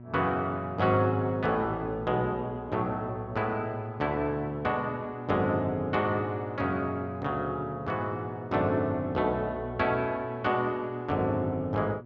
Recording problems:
hum; 60 Hz, harmonics up to 960 Hz, SNR 16 dB

